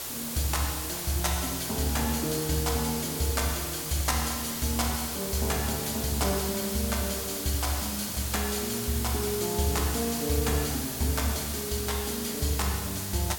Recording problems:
background hiss; slope -1 dB per octave, SNR 3 dB

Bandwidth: 17 kHz